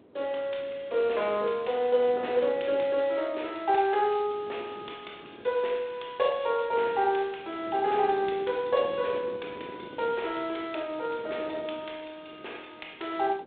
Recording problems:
telephone audio; 300 Hz to 3.8 kHz, G.726
wind on the microphone; below 510 Hz, SNR 19 dB

